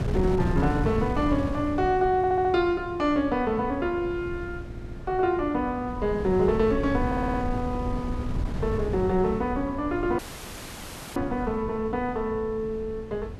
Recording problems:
wind noise; below 200 Hz, SNR 8 dB
stutter; at 2 s, at 4.5 s and at 7 s
dropout; at 10 s for 1 s

